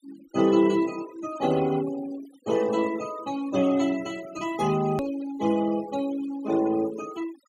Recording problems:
denoising artefacts; signal-to-artefact ratio 16 dB
hard cut with a click; at 5 s

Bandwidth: 15.5 kHz